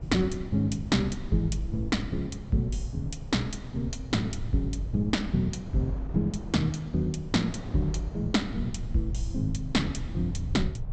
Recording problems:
treble missing; nothing above 8 kHz
low-frequency rumble; below 110 Hz, SNR 10 dB
wind noise; below 680 Hz, SNR 21 dB

